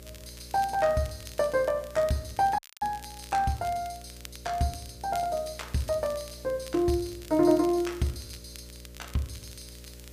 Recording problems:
hum; 60 Hz, harmonics up to 600 Hz, SNR 19 dB
hiss; slope +1 dB per octave, SNR 25 dB
crackle; vinyl, SNR 21 dB
dropout; at 2.5 s

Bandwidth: 15 kHz